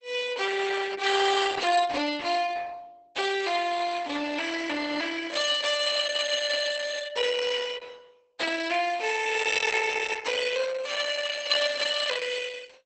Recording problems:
lossy compression; Opus, log-spectral distance 6 dB, nothing above 8 kHz

